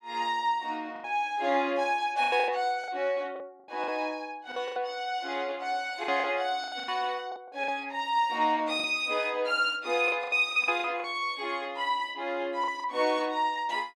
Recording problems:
lost packets; 9% of the sound replaced, filled with the last packet

